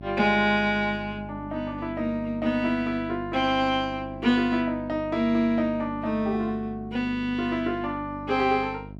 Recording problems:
electrical hum; 50 Hz, harmonics up to 750 Hz, SNR 15 dB

